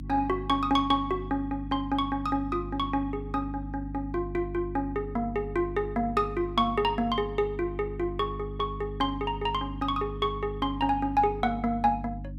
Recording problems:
hum; 50 Hz, harmonics up to 300 Hz, SNR 10 dB

